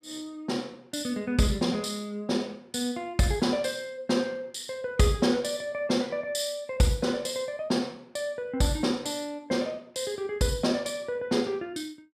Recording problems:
none

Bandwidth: 14.5 kHz